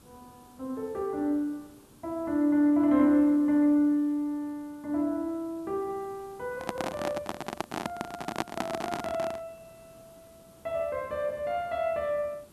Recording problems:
background hiss; SNR 27 dB
microphone handling noise; from 6.5 to 9.5 s; peak +3 dB vs average level

